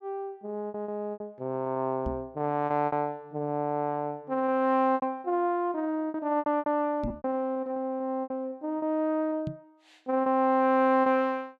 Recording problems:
lost packets; 10% of the sound replaced, filled with repeated pitch periods
knock on the microphone; at 2 s, at 7 s and at 9.5 s; peak -3 dB vs average level

